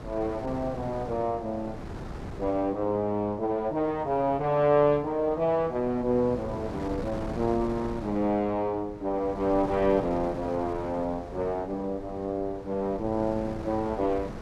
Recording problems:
wind on the microphone; below 540 Hz, SNR 12 dB

